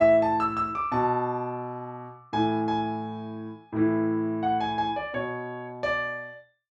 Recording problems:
none

